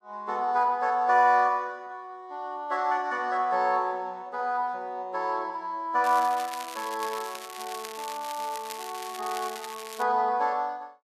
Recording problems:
crackling; from 6 to 10 s; loose cable, SNR 13 dB

